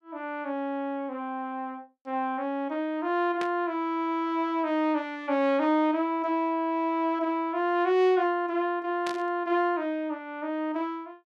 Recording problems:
static burst; at 3.5 s and at 9 s; peak -5 dB vs average level

